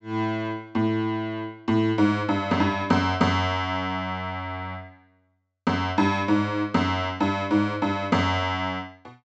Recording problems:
low-pass filter; nothing above 8 kHz

